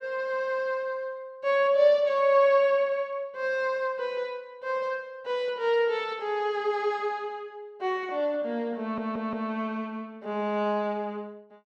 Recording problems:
audio stuttering; at 9 s

